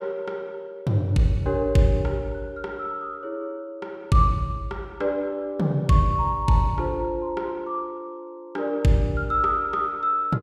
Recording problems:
none

